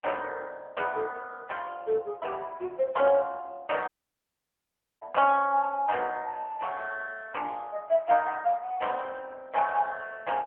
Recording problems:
telephone audio; 300 Hz to 3.3 kHz, AMR-NB
dropout; at 4 s for 1 s

